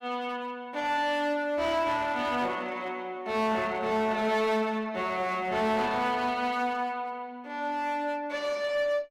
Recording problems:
distortion; hard clipping, uneven, signal-to-distortion ratio 9 dB

